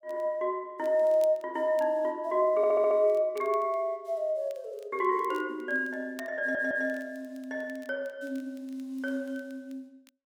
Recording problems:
crackling; vinyl, SNR 29 dB
stutter; at 2.5 s and at 6.5 s

